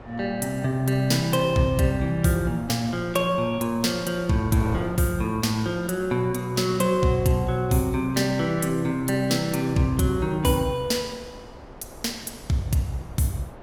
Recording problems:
wind noise; below 790 Hz, SNR 18 dB

